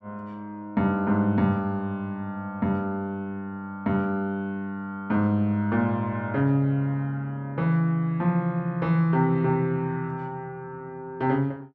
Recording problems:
none

